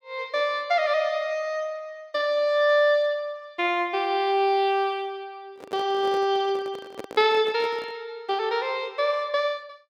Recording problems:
microphone handling noise; from 5.5 to 8 s; peak -7 dB vs average level

